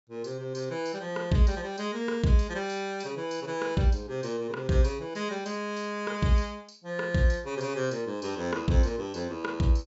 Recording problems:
low-pass filter; nothing above 8 kHz

